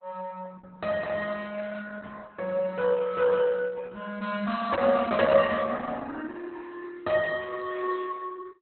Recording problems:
lossy codec; Opus, log-spectral distance 4 dB, nothing above 4.1 kHz

